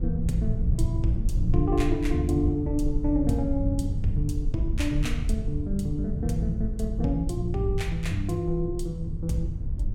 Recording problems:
rumble; below 76 Hz, SNR 3 dB

